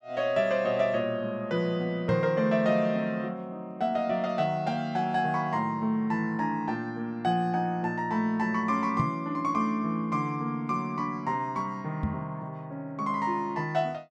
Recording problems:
microphone thump; at 2 s, at 9 s and at 12 s; peak +3 dB vs average level

